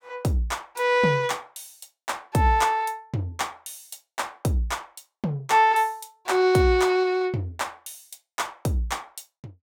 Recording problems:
none

